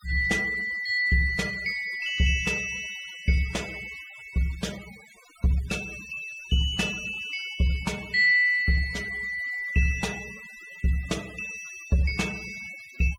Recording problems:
denoising artefacts; signal-to-artefact ratio 20 dB

